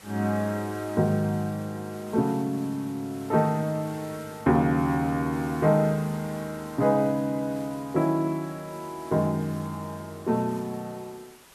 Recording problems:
hiss; slope -2 dB per octave, SNR 21 dB

